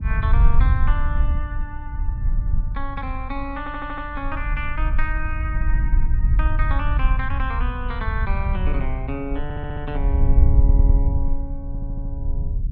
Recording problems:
low-frequency rumble; below 66 Hz, SNR -7 dB
audio stuttering; 4 times, first at 3.5 s

